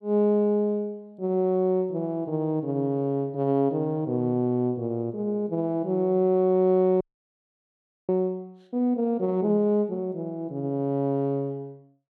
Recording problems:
audio freezing; at 7 s for 1 s

